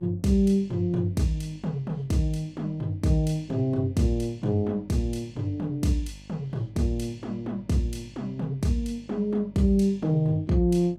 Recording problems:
hum; 50 Hz, harmonics up to 850 Hz, SNR 23 dB

